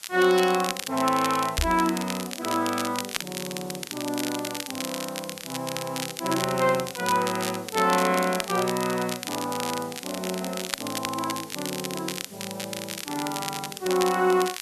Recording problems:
hiss; slope +1 dB per octave, SNR 18 dB
crackle; vinyl, SNR 6 dB
knock on the microphone; at 1.5 s; peak +2 dB vs average level

